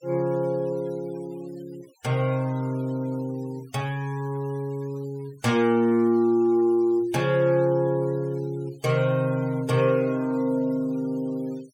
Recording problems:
noise reduction artefacts; signal-to-artefact ratio 26 dB

